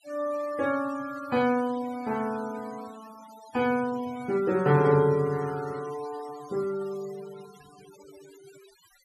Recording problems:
denoising artefacts; signal-to-artefact ratio 20 dB

